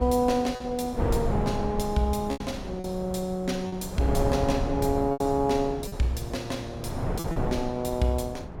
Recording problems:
wind on the microphone; below 410 Hz, SNR 5 dB
lost packets; 5% of the sound replaced, filled with repeated pitch periods

